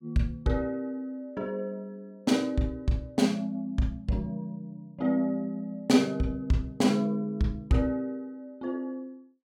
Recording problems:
none

